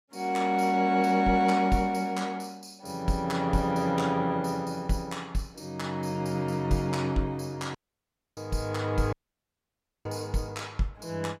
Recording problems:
audio cutting out; at 8 s for 0.5 s and at 9 s for 1 s

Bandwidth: 16 kHz